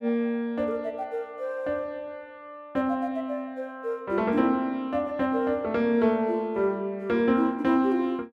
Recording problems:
none

